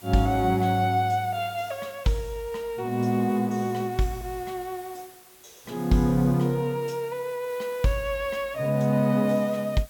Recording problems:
hiss; slope -1 dB per octave, SNR 22 dB

